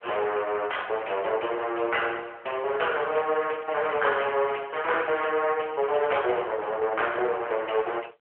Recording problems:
phone line; 340 Hz to 3.2 kHz, AMR-NB

